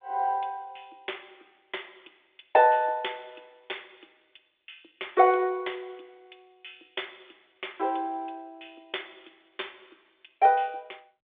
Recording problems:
phone line; 280 Hz to 3.6 kHz, G.726

